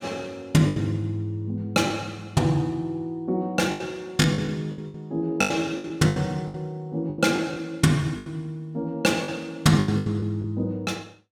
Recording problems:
packet loss; 10% of the sound replaced, filled with the last packet

